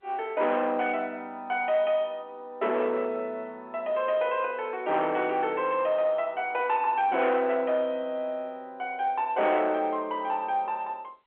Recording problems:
telephone audio; 390 Hz to 3.6 kHz, G.711
distortion; soft clipping, signal-to-distortion ratio 11 dB

